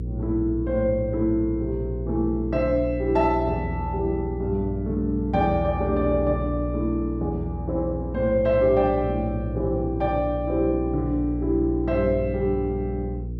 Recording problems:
electrical hum; 60 Hz, harmonics up to 480 Hz, SNR 6 dB

